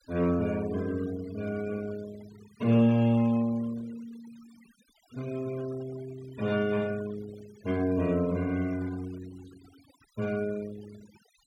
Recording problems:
noise reduction artefacts; signal-to-artefact ratio 21 dB

